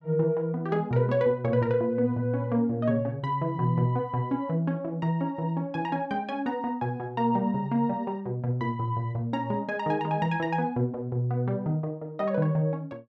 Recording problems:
none

